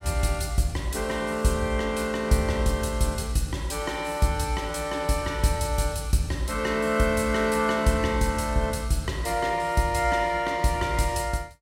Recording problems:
none

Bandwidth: 16.5 kHz